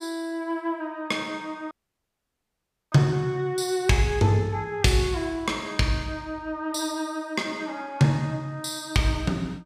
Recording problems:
dropout; at 1.5 s for 1 s

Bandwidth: 15 kHz